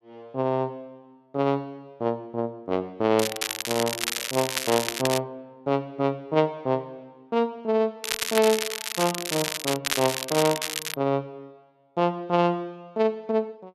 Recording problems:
crackling; from 3 to 5 s and from 8 to 11 s; loose cable, SNR 2 dB

